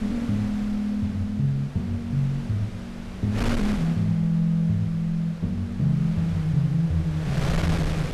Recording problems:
wind noise; below 550 Hz, SNR 10 dB

